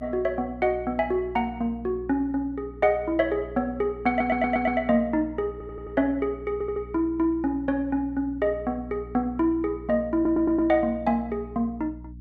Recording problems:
hum; 60 Hz, harmonics up to 300 Hz, SNR 17 dB
audio stuttering; 4 times, first at 4 s

